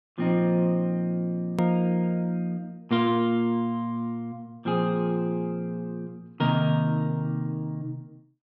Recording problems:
click at an edit; at 1.5 s

